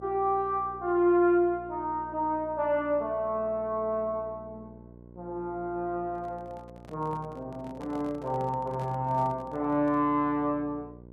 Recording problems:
hum; 60 Hz, harmonics up to 1 kHz, SNR 20 dB
microphone handling noise; from 6 to 10 s; peak -11 dB vs average level

